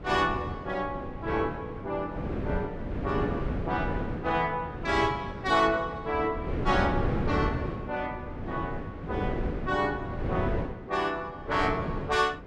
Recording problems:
wind on the microphone; below 370 Hz, SNR 4 dB

